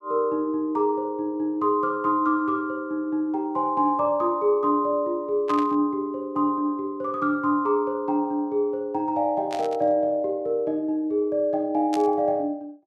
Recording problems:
burst of static; at 5.5 s, at 9.5 s and at 12 s; peak -8 dB vs average level

